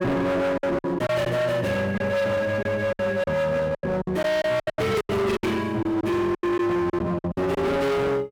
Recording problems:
distorted audio; hard clipping, signal-to-distortion ratio 6 dB
lost packets; 12% of the sound replaced, filled with silence

